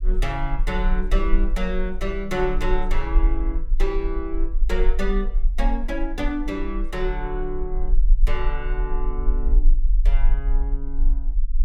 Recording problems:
low-frequency rumble; below 38 Hz, strongest tone 22 Hz, SNR -3 dB

